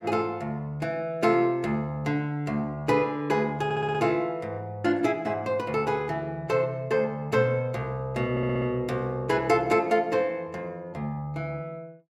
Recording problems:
audio stuttering; at 3.5 s and at 8.5 s

